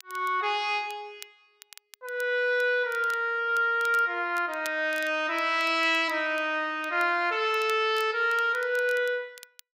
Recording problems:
crackle; vinyl, SNR 23 dB

